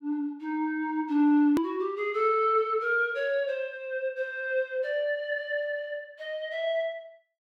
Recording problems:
edit click; at 1.5 s

